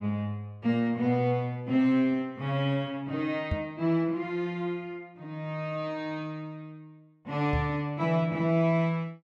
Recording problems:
knock on the microphone; at 3.5 s and at 7.5 s; peak +2 dB vs average level

